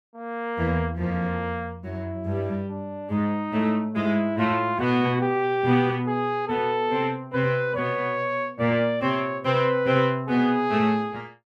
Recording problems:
none

